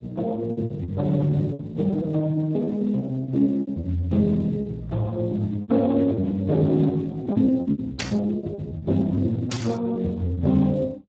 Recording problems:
codec artefacts; Speex, log-spectral distance 2 dB
packet loss; 15% of the sound replaced, filled with repeated pitch periods
static burst; at 8 s and at 9.5 s; peak 0 dB vs average level

